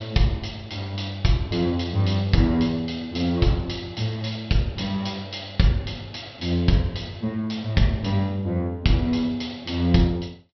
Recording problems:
treble cut off; nothing above 5.5 kHz

